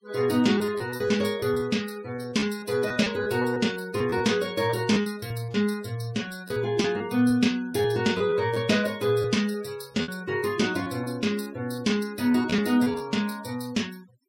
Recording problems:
denoising artefacts; signal-to-artefact ratio 22 dB
lost packets; 9% of the sound replaced, filled with repeated pitch periods

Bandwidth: 16.5 kHz